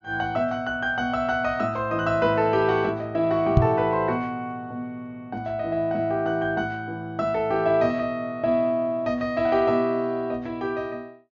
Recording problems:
treble cut off; nothing above 7 kHz
microphone thump; at 3.5 s; peak +9 dB vs average level

